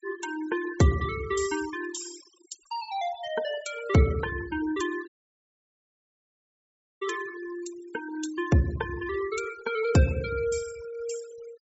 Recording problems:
treble missing; nothing above 8 kHz
denoising artefacts; signal-to-artefact ratio 14 dB
dropout; at 5 s for 2 s

